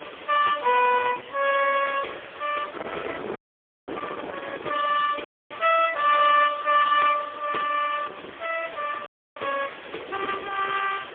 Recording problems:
phone line; 410 Hz to 2.9 kHz, AMR-NB, then MP3
distorted audio; soft clipping, signal-to-distortion ratio 10 dB
background hiss; SNR 18 dB
wind noise; below 1.2 kHz, SNR 16 dB
audio cutting out; at 3.5 s for 0.5 s, at 5.5 s and at 9 s

